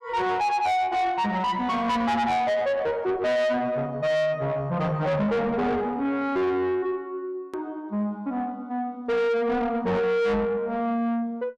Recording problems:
distorted audio; soft clipping, signal-to-distortion ratio 6 dB
edit click; at 7.5 s

